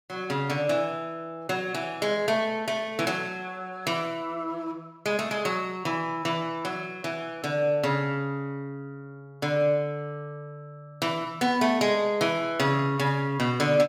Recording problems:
none

